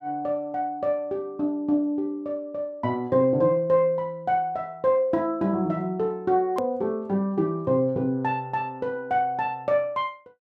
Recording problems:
hard cut with a click; at 6.5 s

